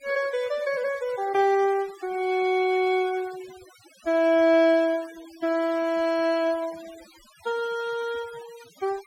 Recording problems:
noise reduction artefacts; signal-to-artefact ratio 22 dB

